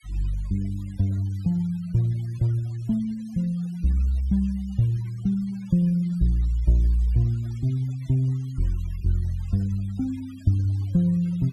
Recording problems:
noise reduction artefacts; signal-to-artefact ratio 27 dB

